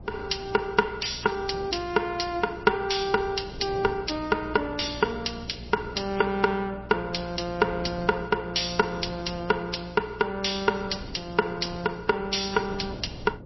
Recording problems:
lossy codec; MP3, log-spectral distance 6 dB, nothing above 5.7 kHz
electrical hum; 60 Hz, harmonics up to 720 Hz, SNR 18 dB
wind noise; below 400 Hz, SNR 17 dB

